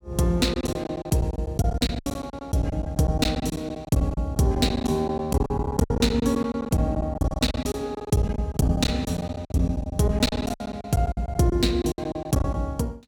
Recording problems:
packet loss; 19% of the sound replaced, filled with silence

